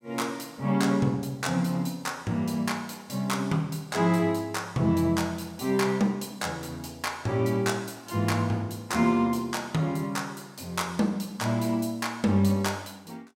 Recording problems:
none

